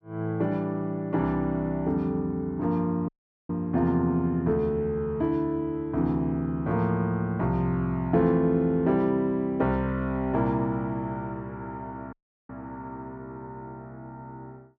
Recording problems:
audio cutting out; at 3 s and at 12 s

